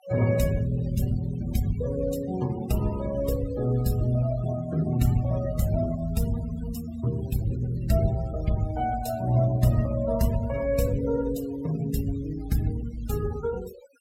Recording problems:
noise reduction artefacts; signal-to-artefact ratio 17 dB

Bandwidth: 16.5 kHz